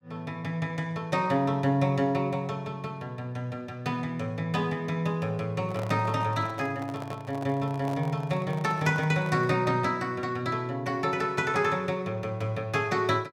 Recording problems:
microphone handling noise; from 5.5 to 9.5 s; peak -7 dB vs average level

